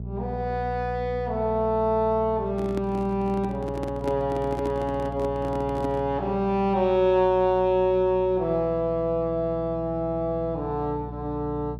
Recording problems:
mains hum; 60 Hz, harmonics up to 480 Hz, SNR 12 dB
microphone handling noise; from 2.5 to 6 s; peak -4 dB vs average level

